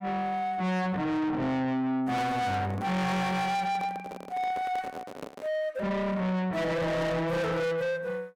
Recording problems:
distorted audio; soft clipping, signal-to-distortion ratio 7 dB
handling noise; from 2 to 5.5 s; peak -5 dB vs average level

